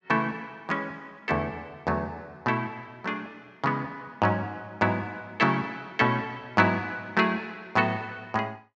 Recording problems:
none

